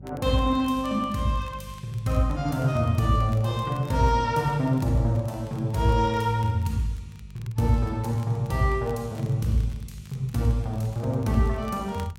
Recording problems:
hum; 50 Hz, harmonics up to 400 Hz, SNR 20 dB
crackle; vinyl, SNR 29 dB

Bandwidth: 16 kHz